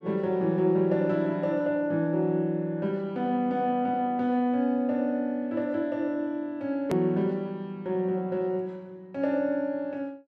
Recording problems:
edit click; at 7 s

